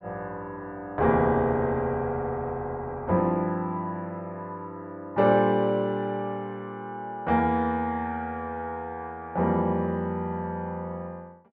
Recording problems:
none

